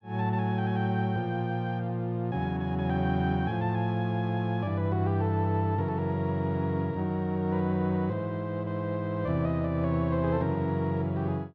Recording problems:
none

